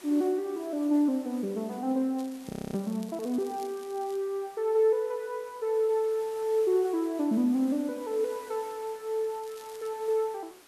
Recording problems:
hiss; slope -2 dB per octave, SNR 22 dB
crackle; from 2 to 4 s and at 9.5 s; loose cable, SNR 24 dB
frozen audio; at 2.5 s

